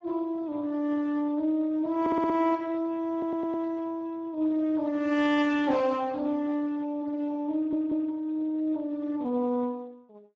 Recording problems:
codec artefacts; Speex, log-spectral distance 2 dB, nothing above 7.3 kHz
stutter; at 2 s, at 3 s and at 7.5 s

